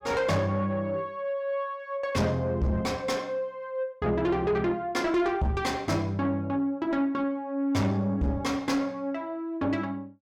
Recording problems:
distorted audio; soft clipping, signal-to-distortion ratio 10 dB

